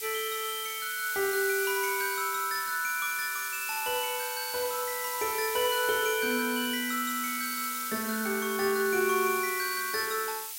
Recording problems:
hiss; slope +5 dB per octave, SNR 5 dB

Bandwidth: 16 kHz